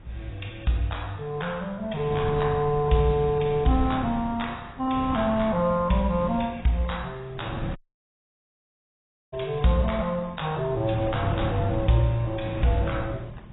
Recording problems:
lossy codec; AAC, log-spectral distance 5 dB, nothing above 3.8 kHz
wind on the microphone; below 220 Hz, SNR 9 dB
dropout; at 8 s for 1.5 s

